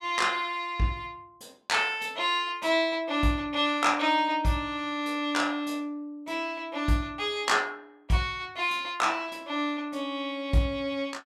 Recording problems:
none

